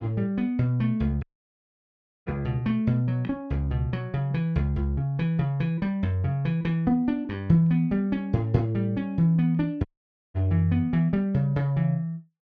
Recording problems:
dropout; at 1 s for 1 s and at 10 s

